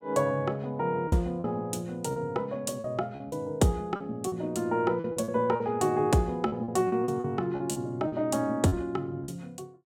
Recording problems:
packet loss; 9% of the sound replaced, filled with repeated pitch periods

